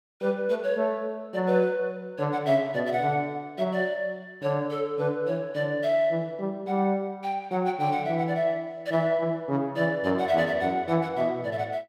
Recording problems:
none

